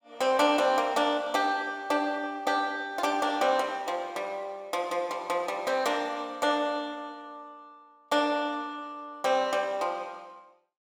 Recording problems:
none

